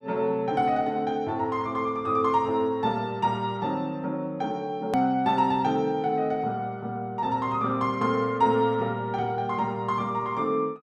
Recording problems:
edit click; at 5 s

